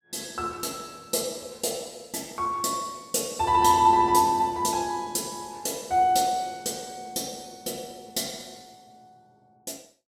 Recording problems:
none

